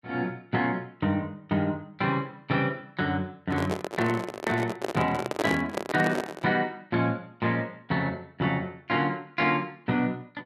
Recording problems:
handling noise; from 3.5 to 6.5 s; peak +4 dB vs average level

